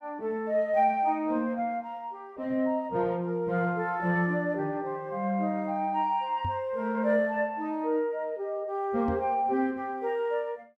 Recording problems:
knock on the microphone; at 6.5 s and at 9 s; peak -3 dB vs average level

